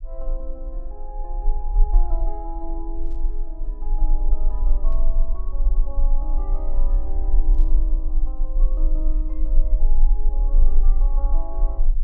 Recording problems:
low-frequency rumble; below 34 Hz, strongest tone 20 Hz, SNR -15 dB
burst of static; at 3 s, at 5 s and at 7.5 s; peak -13 dB vs average level

